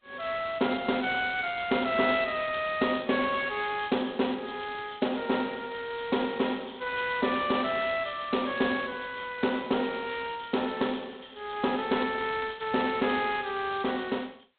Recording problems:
telephone audio; 220 Hz to 3.9 kHz, G.726

